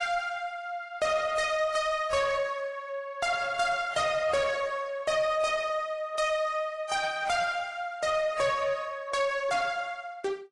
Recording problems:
codec artefacts; AAC, log-spectral distance 2 dB, nothing above 10.1 kHz
distortion; soft clipping, signal-to-distortion ratio 11 dB

